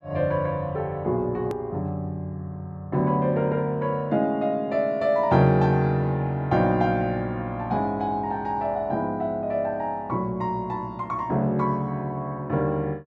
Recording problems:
edit click; at 1.5 s

